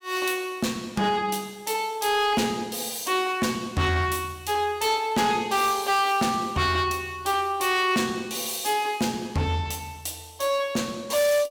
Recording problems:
distorted audio; hard clipping, signal-to-distortion ratio 11 dB

